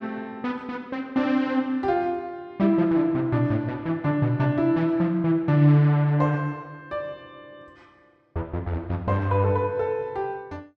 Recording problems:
none

